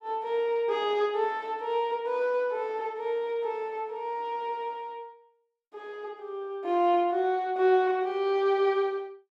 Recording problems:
none

